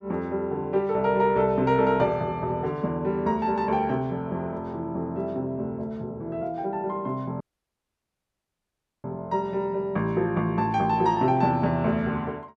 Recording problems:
dropout; at 7.5 s for 1.5 s

